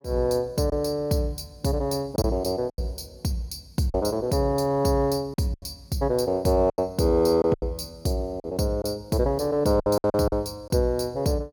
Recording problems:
lost packets; 7% of the sound replaced, filled with silence

